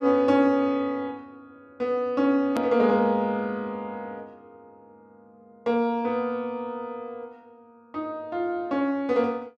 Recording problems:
hard cut with a click; at 2.5 s

